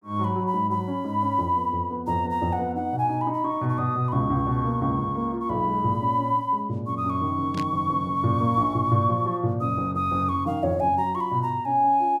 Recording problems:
static burst; at 7.5 s; peak -9 dB vs average level

